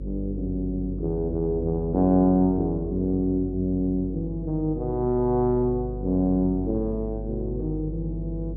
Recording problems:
electrical hum; 50 Hz, harmonics up to 550 Hz, SNR 9 dB

